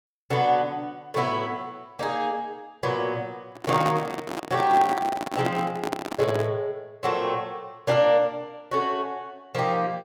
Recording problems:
microphone handling noise; from 3.5 to 6.5 s; peak +1 dB vs average level

